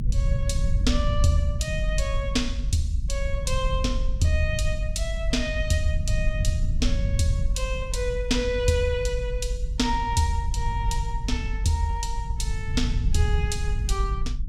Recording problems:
low-frequency rumble; below 78 Hz, SNR 0 dB

